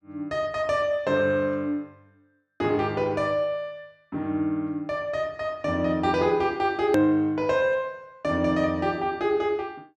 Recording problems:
click at an edit; at 7 s

